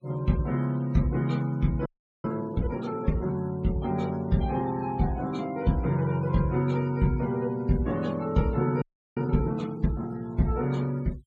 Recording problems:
noise reduction artefacts; signal-to-artefact ratio 24 dB
audio freezing; at 2 s and at 9 s

